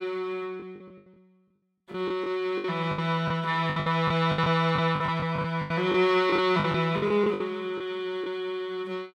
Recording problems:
packet loss; 12% of the sound replaced, filled with the last packet

